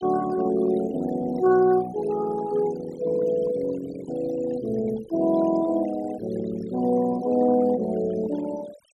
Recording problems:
noise reduction artefacts; signal-to-artefact ratio 18 dB

